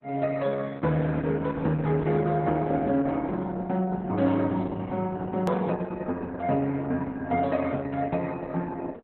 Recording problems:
lossy codec; Opus, log-spectral distance 3 dB, nothing above 13.1 kHz
click at an edit; at 5.5 s

